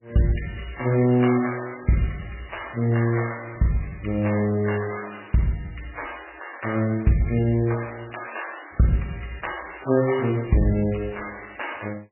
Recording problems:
lossy compression; MP3, log-spectral distance 10 dB, nothing above 2.4 kHz
crackle; from 8 to 9 s and from 9.5 s on; loose cable, SNR 27 dB

